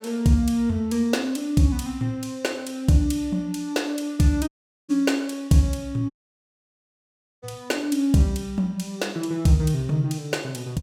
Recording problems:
audio cutting out; at 4.5 s and at 6 s for 1.5 s

